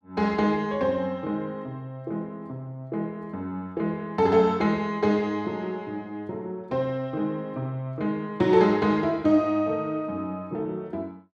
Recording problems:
none

